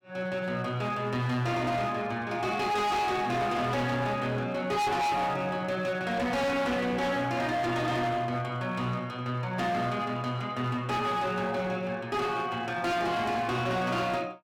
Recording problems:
distortion; hard clipping, signal-to-distortion ratio 7 dB

